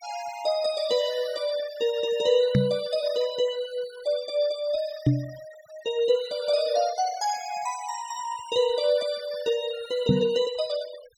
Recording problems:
denoising artefacts; signal-to-artefact ratio 22 dB
microphone bump; at 2.5 s, at 5 s and at 10 s; peak +9 dB vs average level

